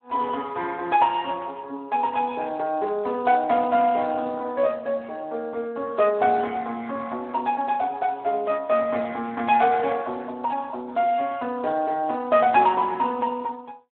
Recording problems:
telephone audio; 320 Hz to 2.8 kHz, Speex

